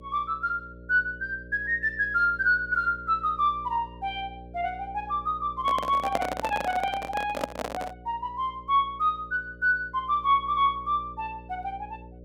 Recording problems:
hum; 60 Hz, harmonics up to 600 Hz, SNR 19 dB
microphone handling noise; from 5.5 to 8 s; peak +2 dB vs average level

